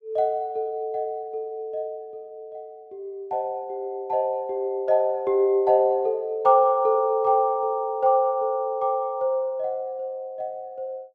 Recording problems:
none

